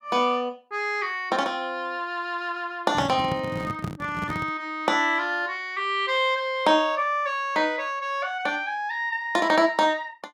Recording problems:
handling noise; from 3 to 4.5 s; peak -1 dB vs average level

